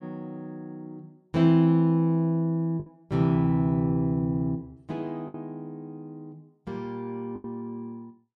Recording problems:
lost packets; 3% of the sound replaced, filled with the last packet

